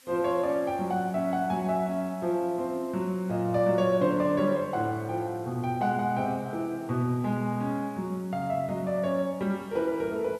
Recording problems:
hiss; slope +2 dB per octave, SNR 27 dB

